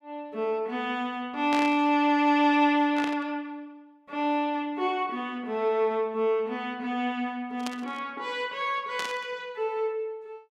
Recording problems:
burst of static; 4 times, first at 1.5 s; peak -1 dB vs average level

